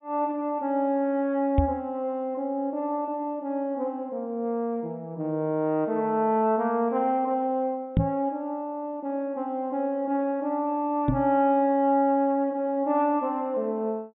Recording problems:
low-pass filter; nothing above 4 kHz
knock on the microphone; at 1.5 s, at 8 s and at 11 s; peak +7 dB vs average level

